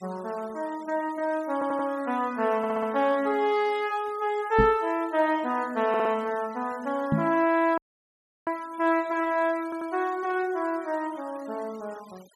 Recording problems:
denoising artefacts; signal-to-artefact ratio 24 dB
stutter; 4 times, first at 1.5 s
microphone thump; at 4.5 s and at 7 s; peak +5 dB vs average level
audio cutting out; at 8 s for 0.5 s

